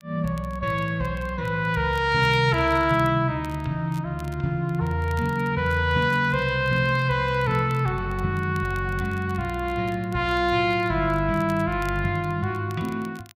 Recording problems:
crackle; vinyl, SNR 27 dB

